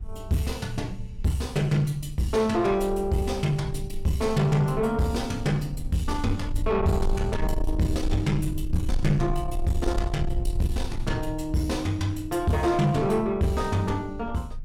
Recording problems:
distortion; soft clipping, signal-to-distortion ratio 11 dB
rumble; below 62 Hz, strongest tone 20 Hz, SNR 9 dB

